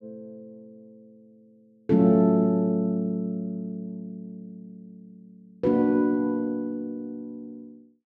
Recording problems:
none

